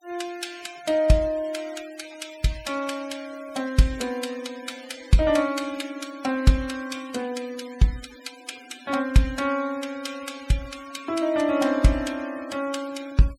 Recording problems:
noise reduction artefacts; signal-to-artefact ratio 19 dB

